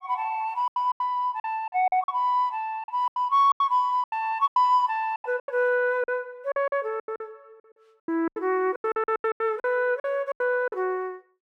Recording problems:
lost packets; 17% of the sound replaced, filled with silence

